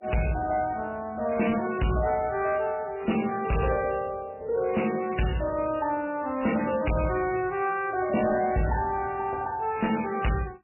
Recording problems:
lossy codec; MP3, log-spectral distance 5 dB, nothing above 2.9 kHz
distorted audio; soft clipping, signal-to-distortion ratio 11 dB

